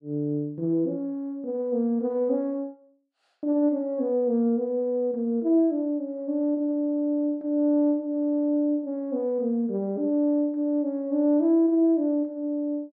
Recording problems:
none

